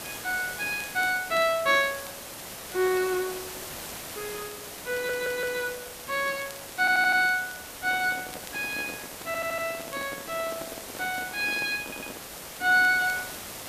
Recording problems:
hiss; slope -3 dB per octave, SNR 11 dB
crackle; vinyl, SNR 24 dB
stutter; 4 times, first at 5 s
microphone handling noise; from 8 to 12 s; peak -9 dB vs average level

